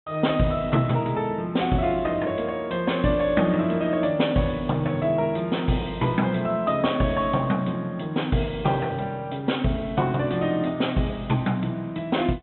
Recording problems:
low-pass filter; nothing above 3.7 kHz

